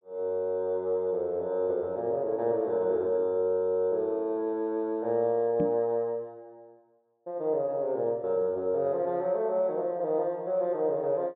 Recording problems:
low-pass filter; nothing above 4 kHz
knock on the microphone; at 5.5 s; peak +1 dB vs average level

